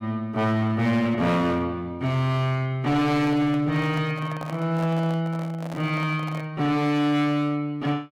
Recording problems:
distorted audio; hard clipping, signal-to-distortion ratio 11 dB
handling noise; from 3 to 6.5 s; peak -7 dB vs average level

